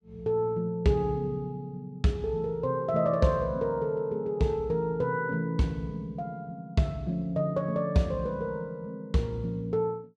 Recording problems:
none

